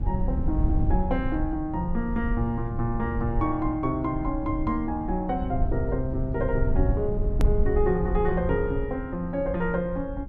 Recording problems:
low-frequency rumble; below 88 Hz, SNR 3 dB
edit click; at 7.5 s

